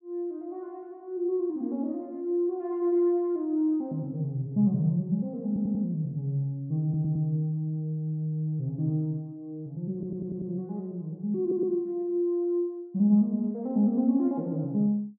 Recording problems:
stutter; 4 times, first at 5.5 s

